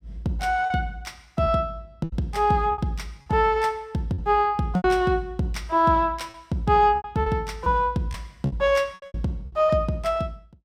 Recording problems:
lost packets; 9% of the sound replaced, filled with repeated pitch periods

